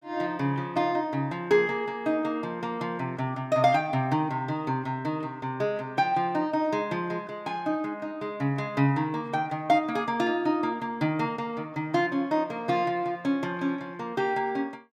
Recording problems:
none

